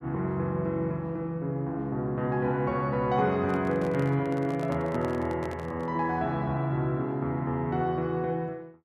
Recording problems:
handling noise; from 3.5 to 6 s; peak -7 dB vs average level

